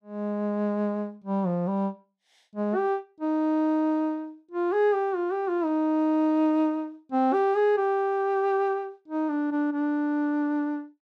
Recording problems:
none

